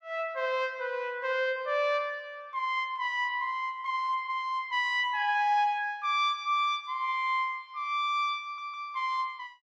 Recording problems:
audio stuttering; at 8.5 s

